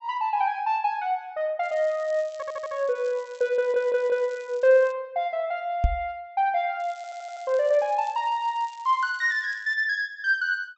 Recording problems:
treble cut off; nothing above 7.9 kHz
crackle; from 1.5 to 5 s and from 7 to 9.5 s; loose cable, SNR 27 dB
audio stuttering; at 2.5 s, at 3.5 s and at 7 s
microphone thump; at 6 s; peak +6 dB vs average level

